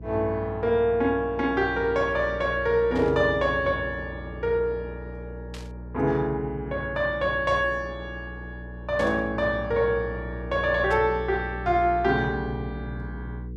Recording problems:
hum; 60 Hz, harmonics up to 480 Hz, SNR 13 dB
static burst; 4 times, first at 3 s; peak -12 dB vs average level

